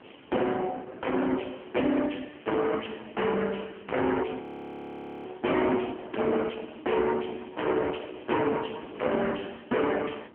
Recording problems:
telephone audio; 240 Hz to 3.1 kHz, AMR-NB
distorted audio; soft clipping, signal-to-distortion ratio 6 dB
wind on the microphone; below 1.1 kHz, SNR 16 dB
crackling; from 1.5 to 5.5 s and from 8 to 9 s; loose cable, SNR 27 dB
audio freezing; at 4.5 s for 1 s

